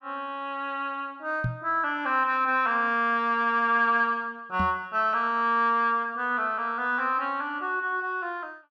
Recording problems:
microphone thump; at 1.5 s and at 4.5 s; peak 0 dB vs average level

